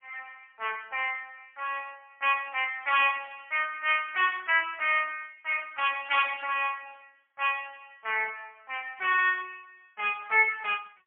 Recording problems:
telephone audio; 320 Hz to 3.3 kHz, AMR-NB, then MP3

